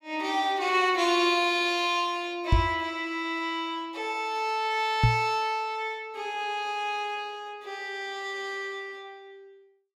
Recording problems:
knock on the microphone; at 2.5 s and at 5 s; peak +9 dB vs average level

